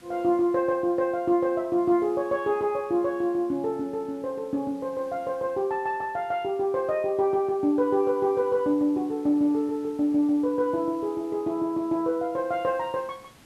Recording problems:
background hiss; slope -3 dB per octave, SNR 29 dB

